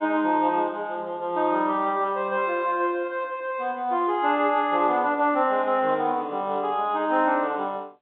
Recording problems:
phone line; 220 Hz to 3.7 kHz, G.711

